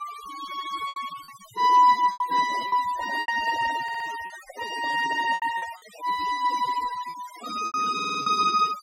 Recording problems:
noise reduction artefacts; signal-to-artefact ratio 16 dB
lost packets; 9% of the sound replaced, filled with repeated pitch periods
microphone handling noise; from 2.5 to 6 s; peak -15 dB vs average level
stutter; at 4 s and at 8 s

